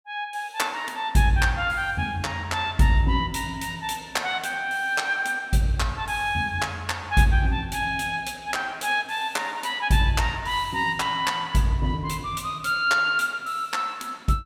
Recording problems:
none

